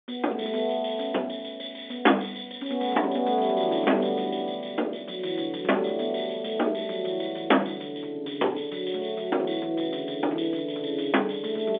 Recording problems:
telephone audio; 260 Hz to 3.6 kHz, G.711
distortion; hard clipping, signal-to-distortion ratio 18 dB

